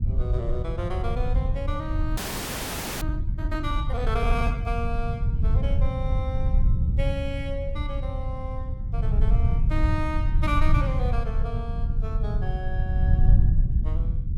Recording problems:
rumble; below 90 Hz, SNR -7 dB
audio freezing; at 2 s for 1 s

